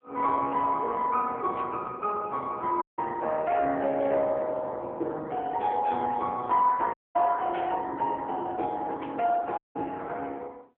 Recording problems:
telephone audio; 280 Hz to 3.6 kHz, AMR-NB
burst of static; at 1.5 s, at 7.5 s and at 9 s; peak -9 dB vs average level
dropout; at 3 s, at 7 s and at 9.5 s

